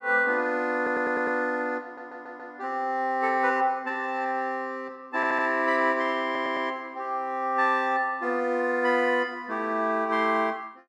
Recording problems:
stutter; 4 times, first at 1 s

